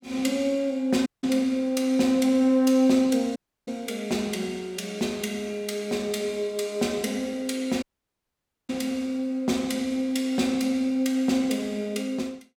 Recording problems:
audio cutting out; at 1 s, at 3.5 s and at 8 s for 1 s

